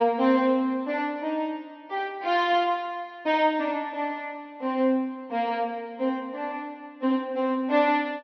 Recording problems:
treble cut off; nothing above 5.9 kHz

